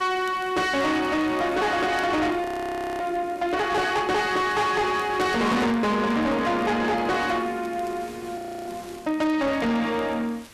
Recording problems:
distorted audio; soft clipping, signal-to-distortion ratio 7 dB
hiss; slope -2 dB per octave, SNR 23 dB
crackle; vinyl, SNR 30 dB
frozen audio; at 2.5 s for 0.5 s and at 8.5 s

